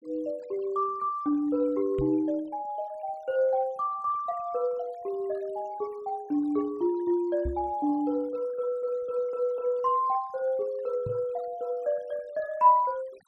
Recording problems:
noise reduction artefacts; signal-to-artefact ratio 27 dB
microphone thump; at 2 s, at 7.5 s and at 11 s; peak -2 dB vs average level

